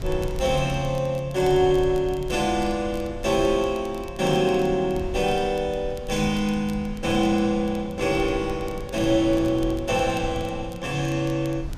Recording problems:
wind on the microphone; below 110 Hz, SNR 14 dB
crackle; vinyl, SNR 26 dB

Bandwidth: 14.5 kHz